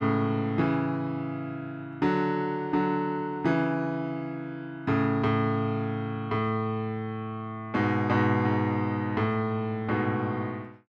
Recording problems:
none

